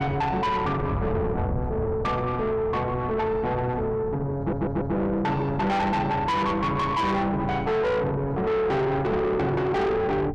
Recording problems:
distortion; soft clipping, signal-to-distortion ratio 6 dB
wind noise; below 280 Hz, SNR 9 dB
audio stuttering; at 4.5 s

